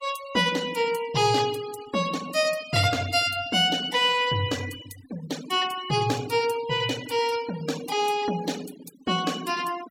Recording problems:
noise reduction artefacts; signal-to-artefact ratio 17 dB

